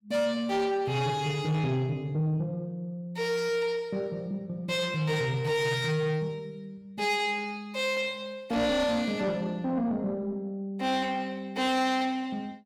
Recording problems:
distortion; soft clipping, signal-to-distortion ratio 11 dB

